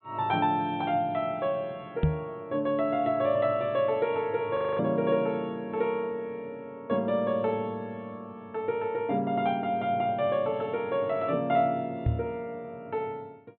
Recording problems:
treble missing; nothing above 4 kHz
microphone bump; at 2 s and at 12 s; peak +7 dB vs average level
audio freezing; at 4.5 s

